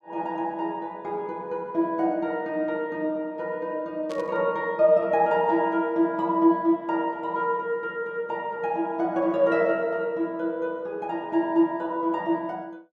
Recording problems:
static burst; at 4 s; peak -13 dB vs average level

